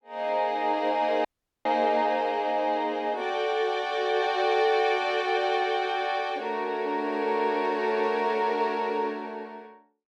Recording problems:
dropout; at 1.5 s

